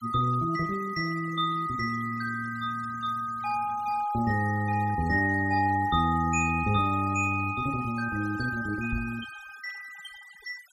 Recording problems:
denoising artefacts; signal-to-artefact ratio 20 dB
microphone thump; at 9 s; peak -2 dB vs average level

